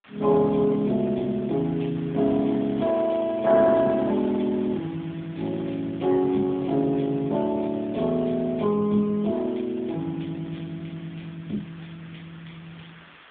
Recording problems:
phone line; 150 Hz to 2.3 kHz, AMR-NB
background hiss; SNR 23 dB

